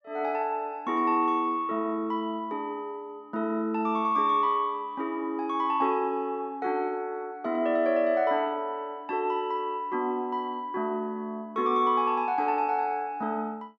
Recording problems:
none

